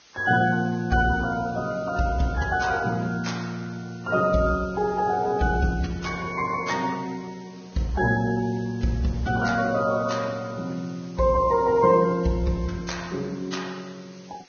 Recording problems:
lossy compression; Vorbis, log-spectral distance 5 dB, nothing above 6.5 kHz
hiss; slope +1 dB per octave, SNR 26 dB

